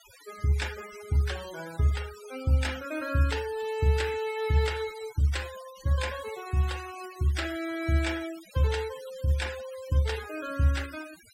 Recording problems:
noise reduction artefacts; signal-to-artefact ratio 15 dB

